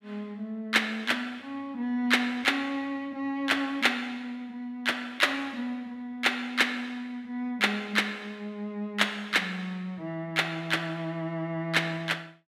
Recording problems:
none

